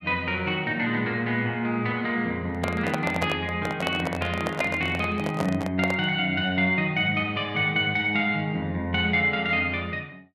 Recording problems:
handling noise; from 2.5 to 6 s; peak +2 dB vs average level

